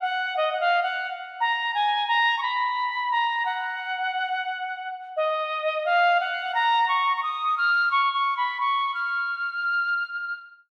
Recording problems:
none

